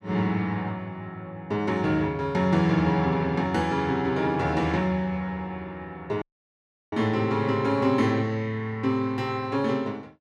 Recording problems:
dropout; at 6 s for 0.5 s

